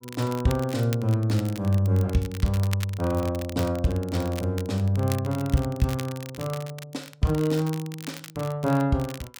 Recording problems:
crackle; vinyl, SNR 16 dB

